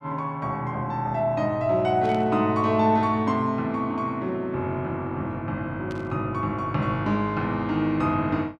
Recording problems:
static burst; at 2 s and at 6 s; peak -14 dB vs average level

